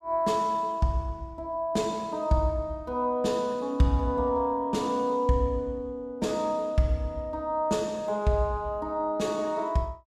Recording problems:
none

